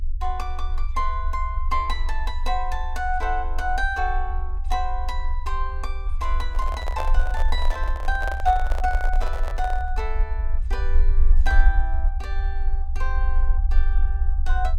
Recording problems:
low-frequency rumble; below 46 Hz, strongest tone 20 Hz, SNR -2 dB
handling noise; from 6.5 to 10 s; peak +2 dB vs average level

